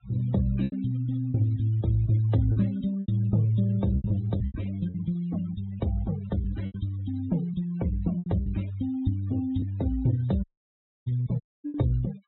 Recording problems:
treble missing; nothing above 4 kHz
noise reduction artefacts; signal-to-artefact ratio 21 dB
packet loss; 7% of the sound replaced, filled with repeated pitch periods
audio cutting out; at 10 s for 0.5 s and at 11 s

